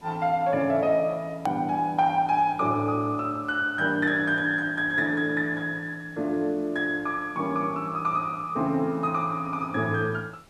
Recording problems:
hiss; SNR 29 dB
edit click; at 1.5 s

